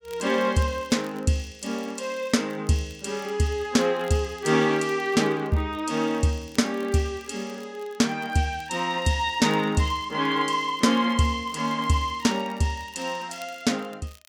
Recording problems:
crackle; vinyl, SNR 27 dB

